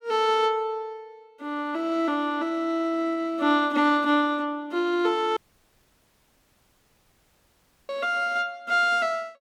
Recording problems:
audio cutting out; at 5.5 s for 2.5 s

